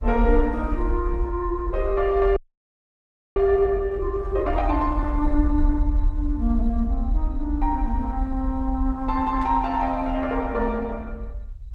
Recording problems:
codec artefacts; Opus, log-spectral distance 2 dB
low-frequency rumble; below 56 Hz, SNR 0 dB
audio freezing; at 2.5 s for 1 s
burst of static; at 9.5 s; peak -16 dB vs average level

